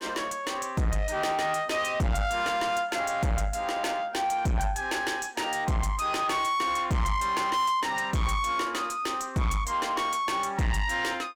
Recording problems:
distorted audio; soft clipping, signal-to-distortion ratio 7 dB

